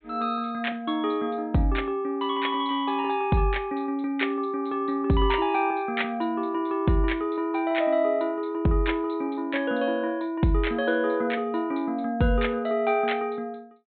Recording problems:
treble missing; nothing above 4 kHz

